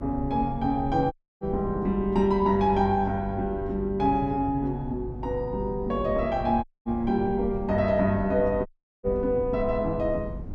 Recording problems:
hum; 50 Hz, harmonics up to 300 Hz, SNR 15 dB
rumble; below 160 Hz, SNR 14 dB
dropout; at 1 s, at 6.5 s and at 8.5 s

